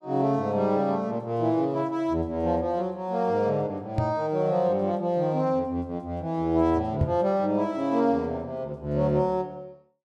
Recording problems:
microphone bump; at 4 s and at 7 s; peak +3 dB vs average level

